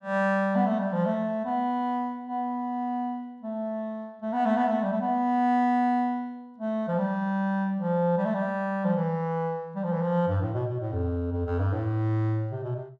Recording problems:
none

